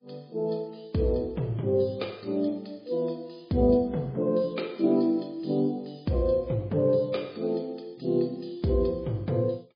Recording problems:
lossy compression; MP3, log-spectral distance 6 dB

